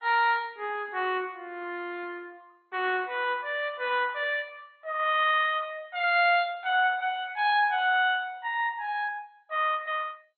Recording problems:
codec artefacts; MP2, log-spectral distance 3 dB, nothing above 3.8 kHz

